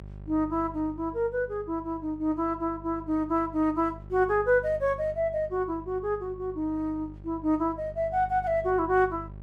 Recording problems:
electrical hum; 50 Hz, harmonics up to 600 Hz, SNR 17 dB

